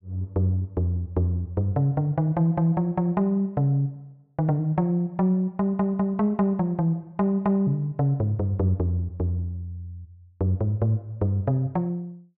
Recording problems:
none

